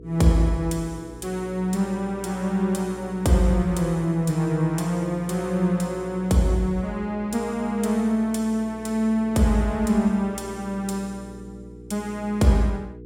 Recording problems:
electrical hum; 60 Hz, harmonics up to 480 Hz, SNR 18 dB

